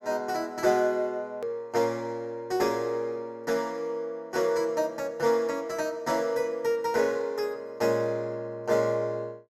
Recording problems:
hard cut with a click; at 1.5 s

